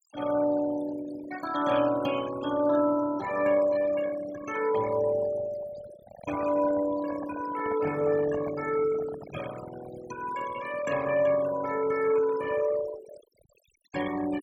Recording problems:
denoising artefacts; signal-to-artefact ratio 12 dB
handling noise; from 6 to 9.5 s; peak -10 dB vs average level

